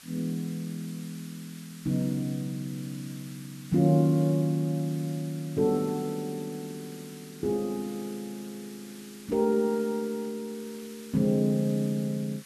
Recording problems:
background hiss; SNR 19 dB

